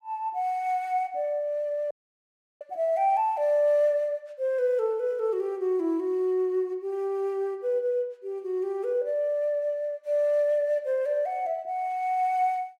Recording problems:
dropout; at 2 s for 0.5 s

